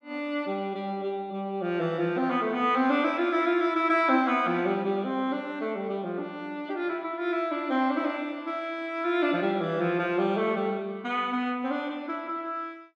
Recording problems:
none

